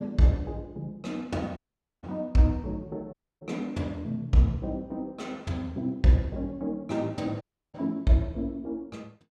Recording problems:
dropout; at 1.5 s, at 3 s and at 7.5 s

